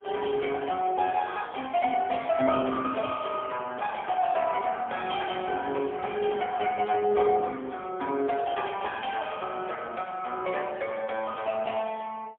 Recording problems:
telephone audio; 220 Hz to 3.1 kHz, AMR-NB, then MP3

